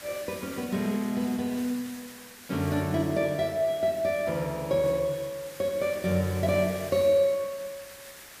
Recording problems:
background hiss; SNR 16 dB

